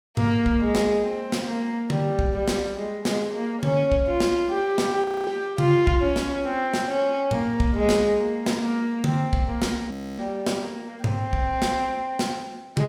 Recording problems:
audio freezing; at 5 s and at 10 s

